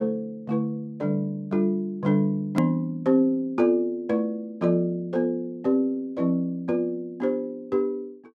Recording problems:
click at an edit; at 2.5 s

